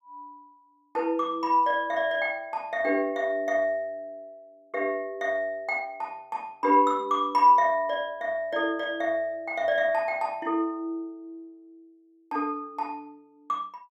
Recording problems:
none

